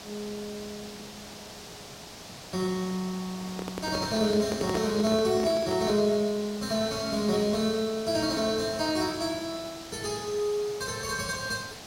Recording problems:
background hiss; SNR 13 dB
microphone handling noise; from 3.5 to 6 s; peak +1 dB vs average level

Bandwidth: 16 kHz